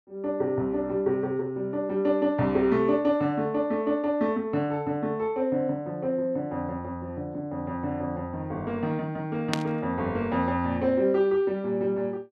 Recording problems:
static burst; at 9.5 s; peak +2 dB vs average level

